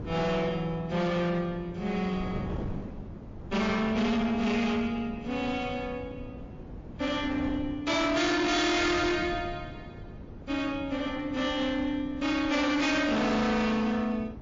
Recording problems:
codec artefacts; MP3, log-spectral distance 2 dB
distortion; hard clipping, uneven, signal-to-distortion ratio 6 dB
wind on the microphone; below 340 Hz, SNR 14 dB

